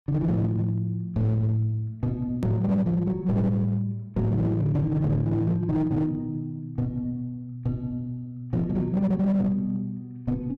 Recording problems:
distortion; hard clipping, signal-to-distortion ratio 12 dB
click at an edit; at 2.5 s

